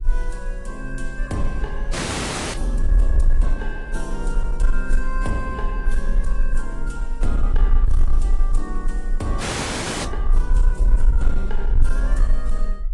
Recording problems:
lossy compression; AAC, then AAC, log-spectral distance 2 dB
distorted audio; hard clipping, uneven, signal-to-distortion ratio 10 dB
low-frequency rumble; below 38 Hz, strongest tone 24 Hz, SNR -7 dB
audio freezing; at 2 s for 0.5 s and at 9.5 s for 0.5 s

